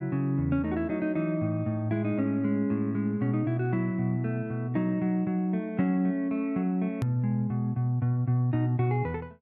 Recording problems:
hard cut with a click; at 7 s

